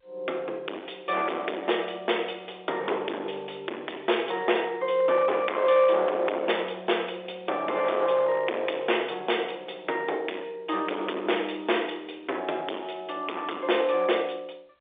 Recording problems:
telephone audio; 280 Hz to 3.6 kHz, G.711
distortion; hard clipping, signal-to-distortion ratio 8 dB

